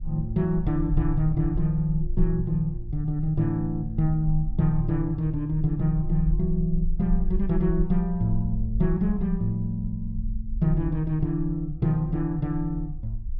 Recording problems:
low-frequency rumble; below 48 Hz, strongest tone 22 Hz, SNR 8 dB

